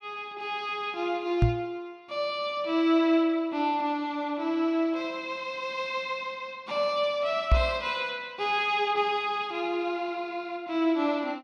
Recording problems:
microphone bump; at 1.5 s and at 7.5 s; peak +9 dB vs average level

